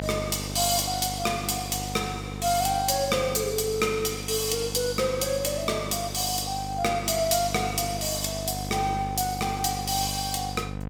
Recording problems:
mains hum; 50 Hz, harmonics up to 1.6 kHz, SNR 10 dB

